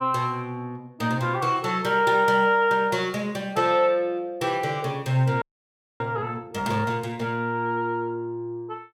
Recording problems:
frozen audio; at 5.5 s for 0.5 s

